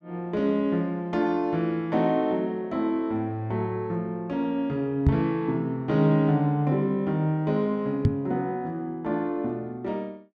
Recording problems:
microphone thump; at 5 s and at 8 s; peak +9 dB vs average level

